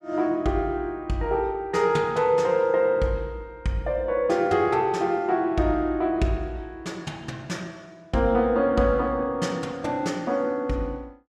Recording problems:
none

